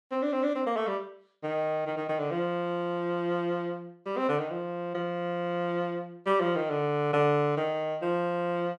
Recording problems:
none

